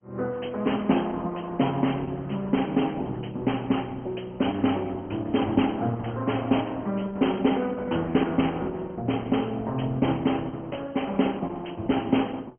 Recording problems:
treble cut off; nothing above 3.2 kHz
codec artefacts; Opus, then MP2, log-spectral distance 6 dB

